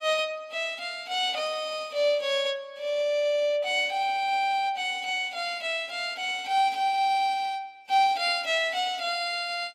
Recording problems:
codec artefacts; AAC, log-spectral distance 2 dB, nothing above 14.7 kHz

